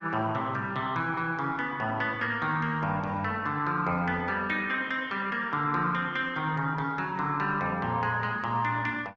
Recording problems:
lossy compression; Opus, log-spectral distance 3 dB

